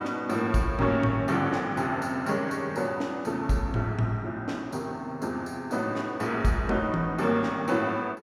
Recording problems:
none

